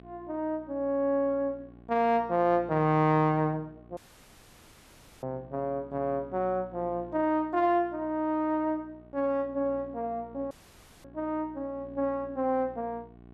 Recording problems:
electrical hum; 60 Hz, harmonics up to 1.1 kHz, SNR 22 dB
audio cutting out; at 4 s for 1.5 s and at 11 s for 0.5 s

